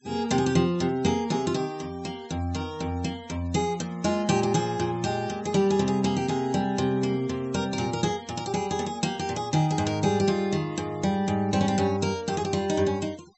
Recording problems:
low-pass filter; nothing above 7.9 kHz
noise reduction artefacts; signal-to-artefact ratio 24 dB

